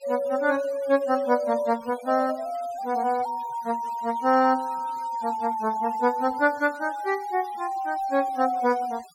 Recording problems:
noise reduction artefacts; signal-to-artefact ratio 22 dB

